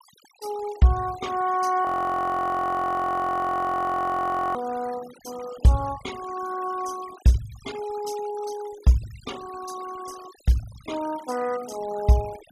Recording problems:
denoising artefacts; signal-to-artefact ratio 19 dB
audio freezing; at 2 s for 2.5 s

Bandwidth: 14.5 kHz